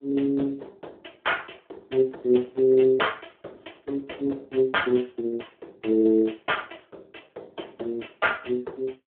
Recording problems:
phone line; 280 Hz to 3.4 kHz, Speex

